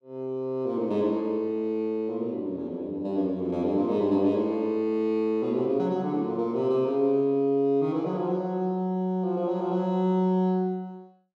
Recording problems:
none

